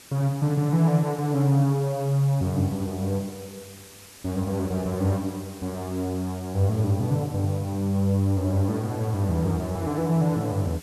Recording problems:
hiss; slope -1 dB per octave, SNR 20 dB

